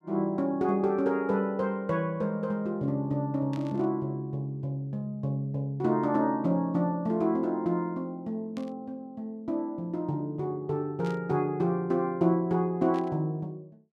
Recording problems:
static burst; 4 times, first at 3.5 s; peak -13 dB vs average level

